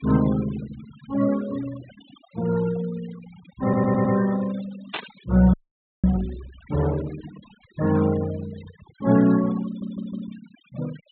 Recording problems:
low-pass filter; nothing above 4 kHz
denoising artefacts; signal-to-artefact ratio 17 dB
stutter; at 3.5 s and at 9.5 s
static burst; at 5 s; peak -2 dB vs average level
frozen audio; at 5.5 s for 0.5 s

